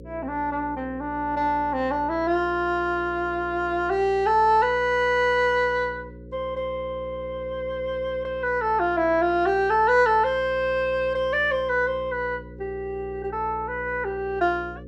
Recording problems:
hum; 60 Hz, harmonics up to 540 Hz, SNR 18 dB

